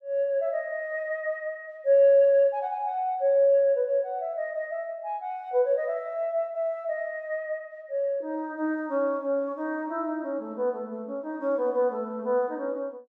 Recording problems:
none

